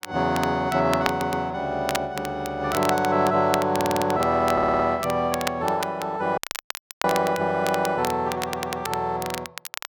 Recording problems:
crackle; vinyl, SNR 10 dB
stutter; 4 times, first at 1 s
audio cutting out; at 6.5 s for 0.5 s

